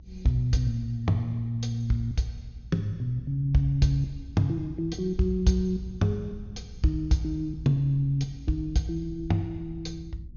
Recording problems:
low-pass filter; nothing above 6.7 kHz
rumble; below 84 Hz, strongest tone 58 Hz, SNR 17 dB

